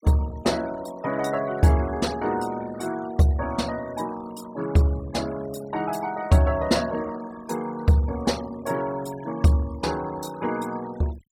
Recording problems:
denoising artefacts; signal-to-artefact ratio 19 dB

